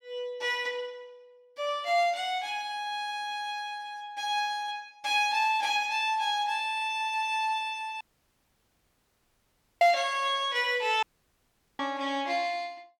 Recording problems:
audio cutting out; at 8 s for 2 s and at 11 s for 1 s

